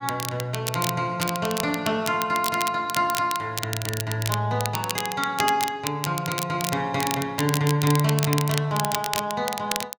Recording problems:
crackle; vinyl, SNR 6 dB

